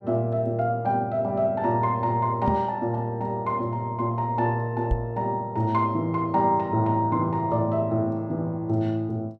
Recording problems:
microphone bump; at 2.5 s and at 5 s; peak +3 dB vs average level

